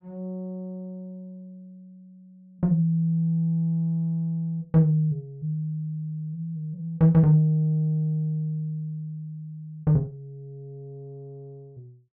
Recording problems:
none

